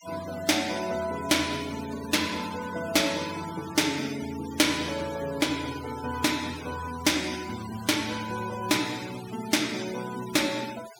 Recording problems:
denoising artefacts; signal-to-artefact ratio 13 dB

